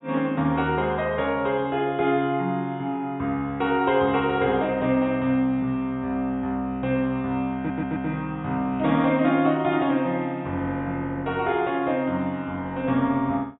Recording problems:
treble missing; nothing above 4 kHz
stutter; at 7.5 s

